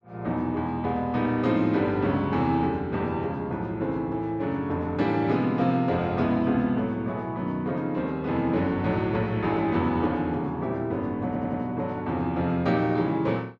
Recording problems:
stutter; at 11 s

